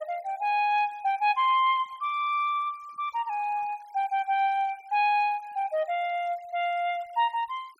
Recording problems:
noise reduction artefacts; signal-to-artefact ratio 28 dB

